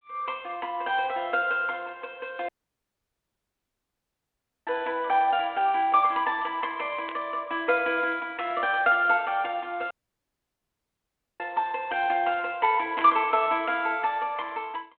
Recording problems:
telephone audio; 280 Hz to 3.5 kHz, G.726
dropout; at 2.5 s for 2 s and at 10 s for 1.5 s
static burst; at 7 s and at 13 s; peak -7 dB vs average level

